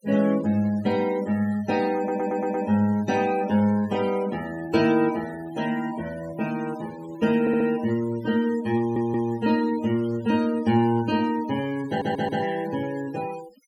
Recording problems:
denoising artefacts; signal-to-artefact ratio 18 dB
audio stuttering; 4 times, first at 2 s

